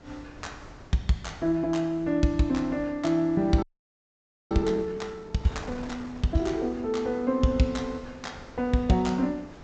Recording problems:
treble missing; nothing above 8 kHz
wind noise; below 840 Hz, SNR 19 dB
audio freezing; at 3.5 s for 1 s

